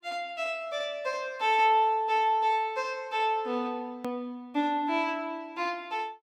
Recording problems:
hard cut with a click; at 4 s

